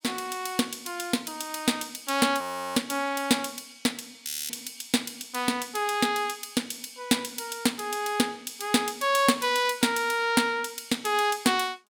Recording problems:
audio freezing; at 2.5 s and at 4.5 s

